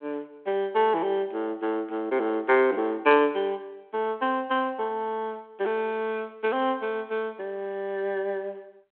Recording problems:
telephone audio; 280 Hz to 3.5 kHz, G.726

